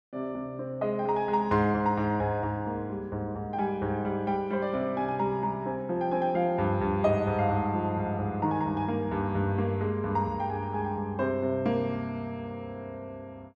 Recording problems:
none

